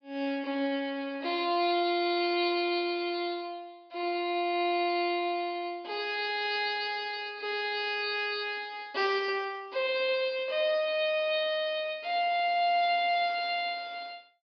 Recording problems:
treble missing; nothing above 5.5 kHz

